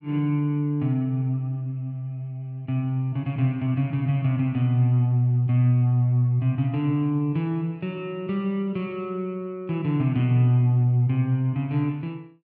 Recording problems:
none

